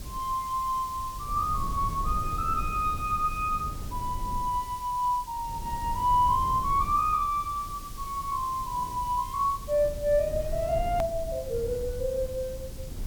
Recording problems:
background hiss; slope +3 dB per octave, SNR 18 dB
rumble; below 110 Hz, SNR 11 dB
edit click; at 11 s

